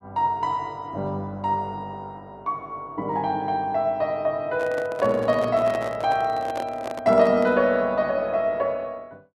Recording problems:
handling noise; from 4.5 to 7.5 s; peak -5 dB vs average level

